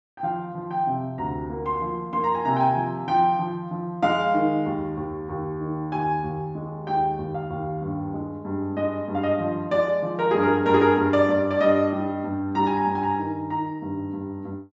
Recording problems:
treble cut off; nothing above 8 kHz

